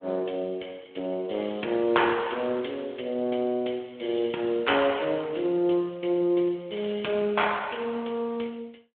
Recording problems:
telephone audio; 260 Hz to 3.4 kHz, Speex

